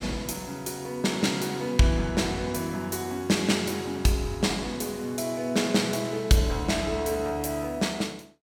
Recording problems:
none

